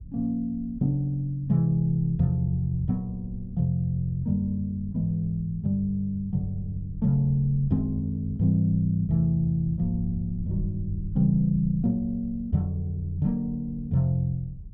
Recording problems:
low-frequency rumble; below 90 Hz, SNR 15 dB

